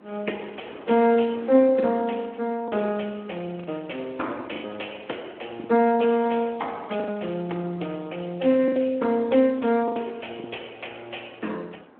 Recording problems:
phone line; 240 Hz to 3.2 kHz, Speex
wind on the microphone; below 980 Hz, SNR 24 dB
packet loss; 5% of the sound replaced, filled with the last packet

